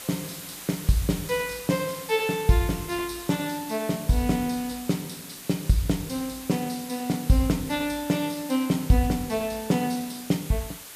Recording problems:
background hiss; slope 0 dB per octave, SNR 12 dB

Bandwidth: 14.5 kHz